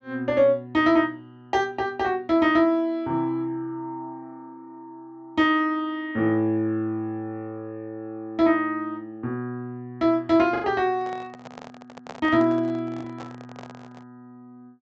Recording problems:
treble missing; nothing above 8 kHz
lost packets; 0.9% of the sound replaced, filled with the last packet
handling noise; from 11 to 14 s; peak -10 dB vs average level

